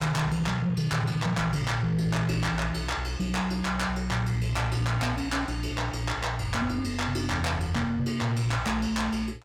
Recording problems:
distortion; soft clipping, signal-to-distortion ratio 12 dB

